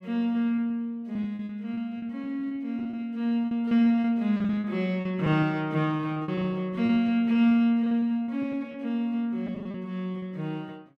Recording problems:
lost packets; 13% of the sound replaced, filled with repeated pitch periods

